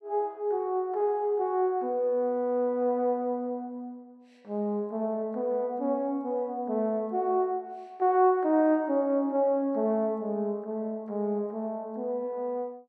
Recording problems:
none

